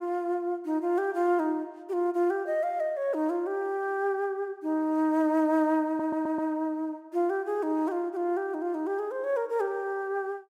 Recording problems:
audio stuttering; at 6 s

